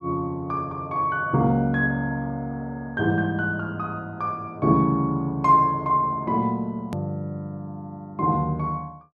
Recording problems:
hard cut with a click; at 7 s

